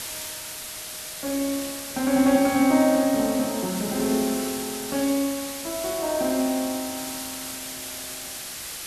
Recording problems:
hiss; slope +1 dB per octave, SNR 8 dB

